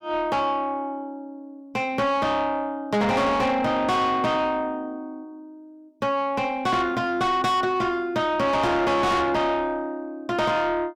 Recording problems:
distorted audio; soft clipping, signal-to-distortion ratio 7 dB

